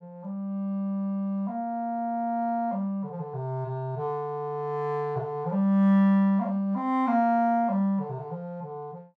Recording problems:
none

